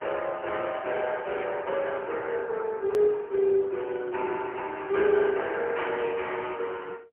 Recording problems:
phone line; 300 Hz to 3.2 kHz, AMR-NB, then MP3
edit click; at 3 s

